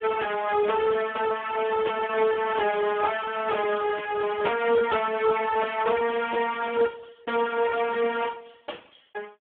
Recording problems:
telephone audio; 260 Hz to 3.3 kHz, Speex

